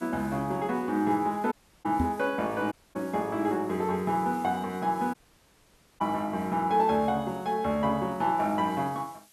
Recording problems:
background hiss; slope 0 dB per octave, SNR 26 dB
audio cutting out; at 1.5 s, at 2.5 s and at 5 s for 1 s
microphone thump; at 2 s; peak +4 dB vs average level

